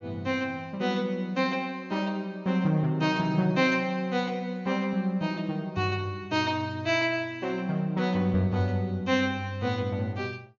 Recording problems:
treble cut off; nothing above 7 kHz

